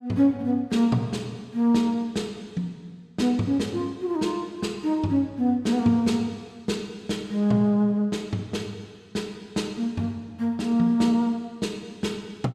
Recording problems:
none

